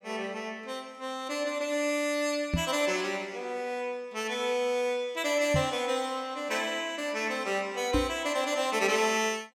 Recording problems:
microphone thump; at 2.5 s, at 5.5 s and at 8 s; peak +5 dB vs average level

